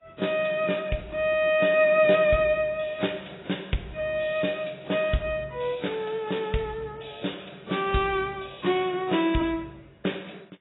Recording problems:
codec artefacts; AAC, log-spectral distance 7 dB, nothing above 3.8 kHz

